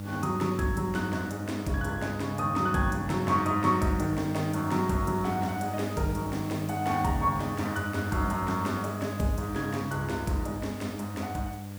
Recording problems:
hum; 50 Hz, harmonics up to 900 Hz, SNR 8 dB
hiss; slope -3 dB per octave, SNR 19 dB

